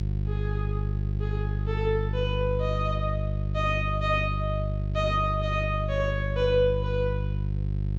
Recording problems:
electrical hum; 50 Hz, harmonics up to 400 Hz, SNR 0 dB

